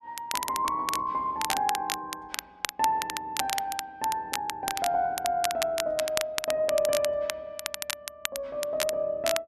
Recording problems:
crackling; vinyl, SNR 5 dB

